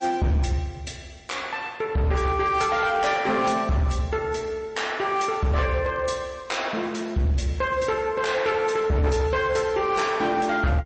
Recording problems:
codec artefacts; MP3, log-spectral distance 2 dB, nothing above 8.2 kHz
distortion; hard clipping, signal-to-distortion ratio 11 dB

